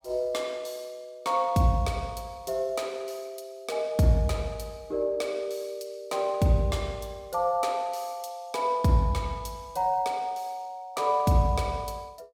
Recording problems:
none

